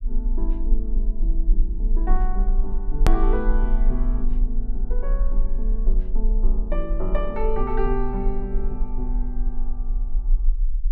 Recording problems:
rumble; below 36 Hz, strongest tone 26 Hz, SNR -5 dB
hard cut with a click; at 3 s

